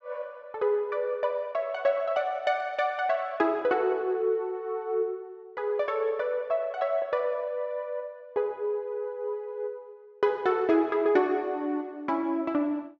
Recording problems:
low-pass filter; nothing above 8 kHz

